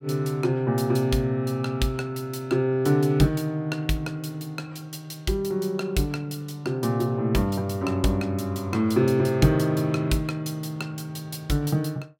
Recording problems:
none

